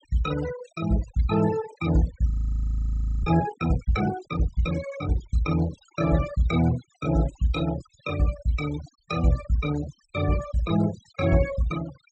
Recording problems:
treble cut off; nothing above 8 kHz
noise reduction artefacts; signal-to-artefact ratio 15 dB
audio freezing; at 2.5 s for 1 s

